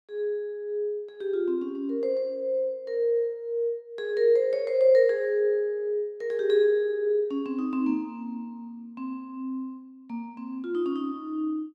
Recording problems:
none

